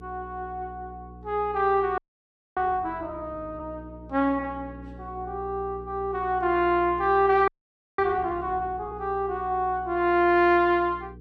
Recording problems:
hum; 60 Hz, harmonics up to 480 Hz, SNR 19 dB
frozen audio; at 2 s for 0.5 s and at 7.5 s for 0.5 s

